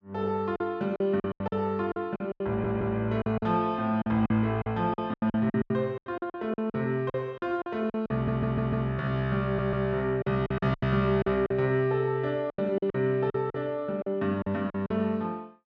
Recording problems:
packet loss; 14% of the sound replaced, filled with silence
stutter; at 2.5 s, at 8 s and at 9.5 s

